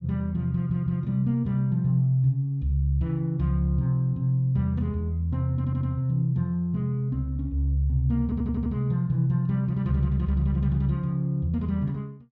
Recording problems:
stutter; at 0.5 s, at 5.5 s and at 8 s

